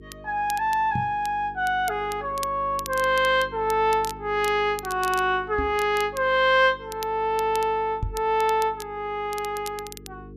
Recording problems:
mains hum; 50 Hz, harmonics up to 450 Hz, SNR 21 dB
crackle; vinyl, SNR 18 dB
microphone thump; at 1 s, at 5.5 s and at 8 s; peak -1 dB vs average level

